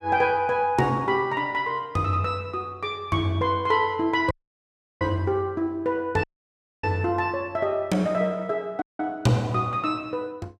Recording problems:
dropout; at 4.5 s for 0.5 s, at 6 s for 0.5 s and at 9 s

